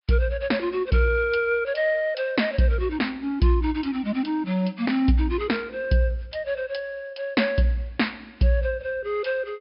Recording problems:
treble missing; nothing above 5.5 kHz

